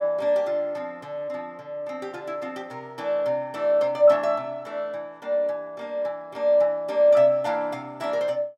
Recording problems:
none

